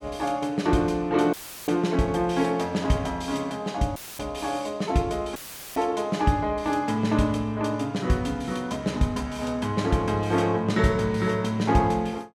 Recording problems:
audio cutting out; at 1.5 s, at 4 s and at 5.5 s; filled with static

